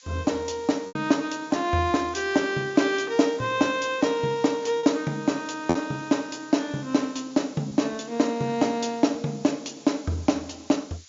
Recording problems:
low-pass filter; nothing above 7.2 kHz
background hiss; slope +5 dB per octave, SNR 23 dB
packet loss; 1.9% of the sound replaced, filled with repeated pitch periods

